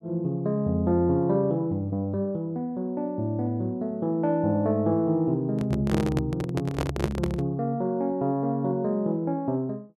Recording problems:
handling noise; from 5.5 to 7.5 s; peak +3 dB vs average level

